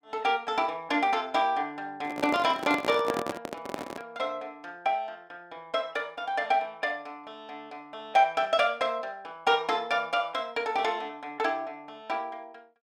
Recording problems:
handling noise; from 2 to 4 s; peak +2 dB vs average level

